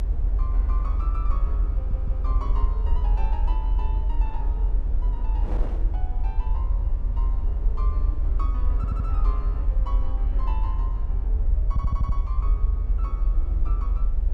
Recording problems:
low-frequency rumble; below 54 Hz, strongest tone 42 Hz, SNR -15 dB
wind on the microphone; below 550 Hz, SNR 5 dB
stutter; at 2 s, at 9 s and at 12 s

